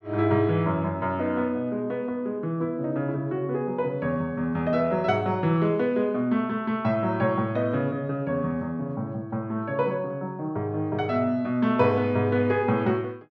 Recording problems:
none

